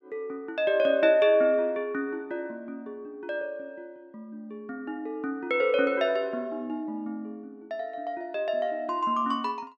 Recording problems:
none

